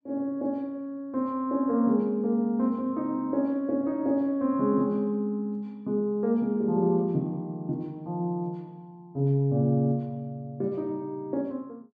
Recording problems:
none

